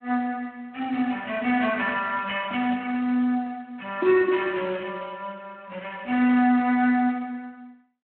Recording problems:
phone line; 220 Hz to 3.2 kHz, Speex

